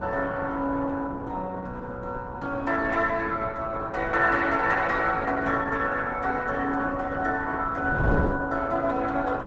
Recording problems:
lossy codec; Opus, log-spectral distance 3 dB, nothing above 7.8 kHz
wind noise; below 440 Hz, SNR 10 dB

